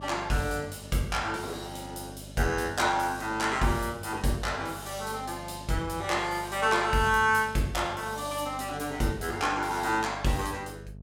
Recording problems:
mains hum; 50 Hz, harmonics up to 650 Hz, SNR 17 dB

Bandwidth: 16.5 kHz